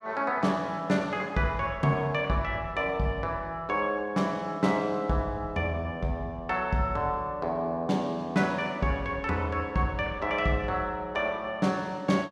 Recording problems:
none

